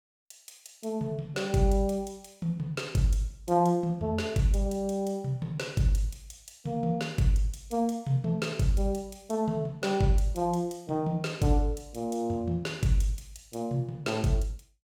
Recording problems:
none

